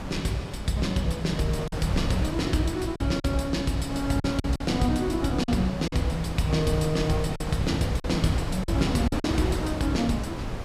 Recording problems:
wind on the microphone; below 540 Hz, SNR 6 dB
lost packets; 5% of the sound replaced, filled with silence

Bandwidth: 14.5 kHz